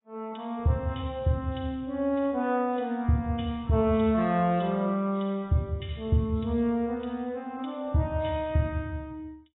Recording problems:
lossy compression; AAC, log-spectral distance 3 dB, nothing above 3.6 kHz

